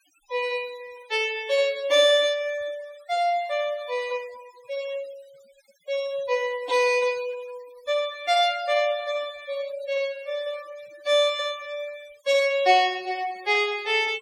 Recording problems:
noise reduction artefacts; signal-to-artefact ratio 21 dB

